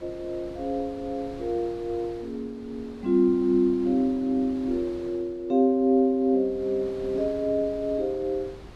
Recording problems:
wind on the microphone; below 700 Hz, SNR 20 dB

